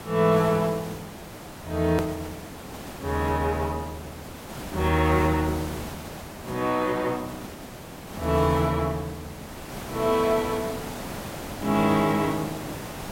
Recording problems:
hiss; slope -5 dB per octave, SNR 12 dB
edit click; at 2 s

